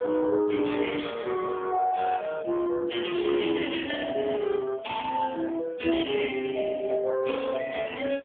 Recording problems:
telephone audio; 260 Hz to 3.4 kHz, AMR-NB

